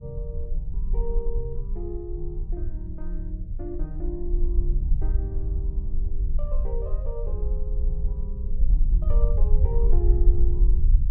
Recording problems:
rumble; below 48 Hz, SNR -10 dB

